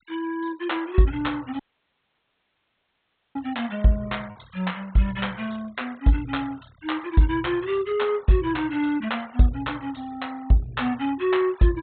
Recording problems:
treble missing; nothing above 4 kHz
noise reduction artefacts; signal-to-artefact ratio 25 dB
packet loss; 0.4% of the sound replaced, filled with repeated pitch periods
audio cutting out; at 1.5 s for 2 s

